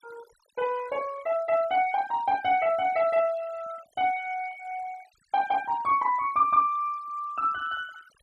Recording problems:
denoising artefacts; signal-to-artefact ratio 21 dB

